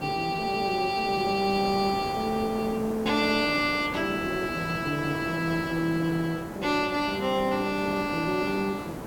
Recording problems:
hiss; slope -9 dB per octave, SNR 10 dB

